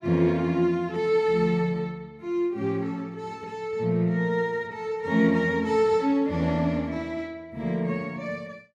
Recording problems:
none

